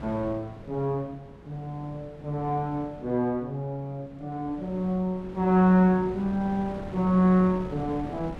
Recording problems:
wind noise; below 460 Hz, SNR 16 dB

